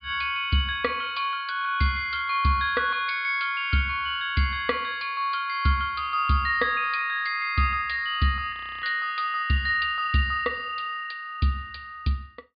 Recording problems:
low-pass filter; nothing above 4.9 kHz
frozen audio; at 8.5 s

